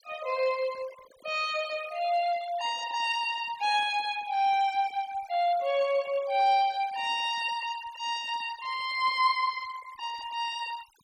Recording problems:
denoising artefacts; signal-to-artefact ratio 19 dB

